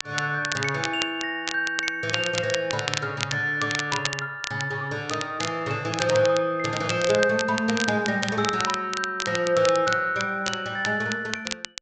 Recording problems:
treble cut off; nothing above 8 kHz
crackle; vinyl, SNR 7 dB

